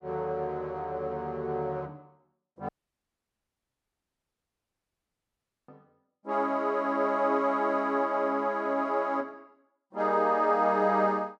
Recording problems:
audio cutting out; at 2.5 s for 3 s

